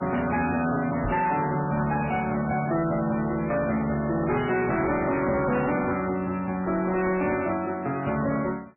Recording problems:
lossy compression; MP3, log-spectral distance 4 dB, nothing above 2.4 kHz
distorted audio; hard clipping, uneven, signal-to-distortion ratio 10 dB
microphone bump; at 1 s; peak -1 dB vs average level

